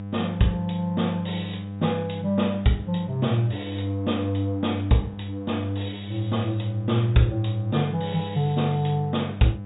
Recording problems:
treble missing; nothing above 4 kHz
electrical hum; 50 Hz, harmonics up to 1 kHz, SNR 9 dB

